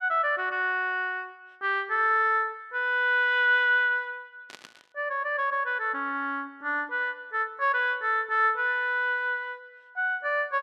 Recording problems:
static burst; at 4.5 s; peak -13 dB vs average level

